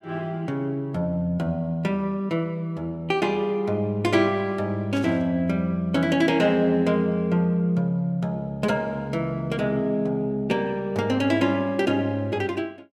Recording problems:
static burst; at 5 s; peak -13 dB vs average level

